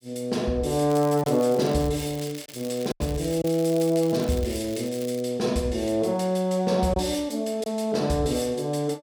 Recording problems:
lost packets; 2% of the sound replaced, filled with silence
crackling; from 1 to 5 s; loose cable, SNR 17 dB

